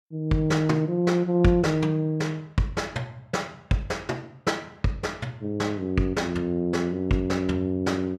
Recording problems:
none

